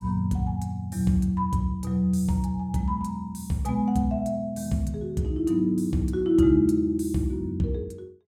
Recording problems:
none

